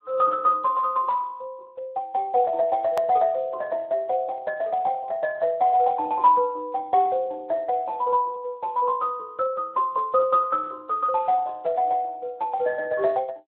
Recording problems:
telephone audio; 220 Hz to 2 kHz, Speex
click at an edit; at 3 s

